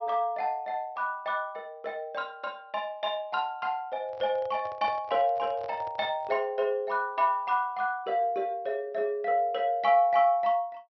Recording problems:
treble cut off; nothing above 5.9 kHz
microphone handling noise; from 4 to 6.5 s; peak -9 dB vs average level

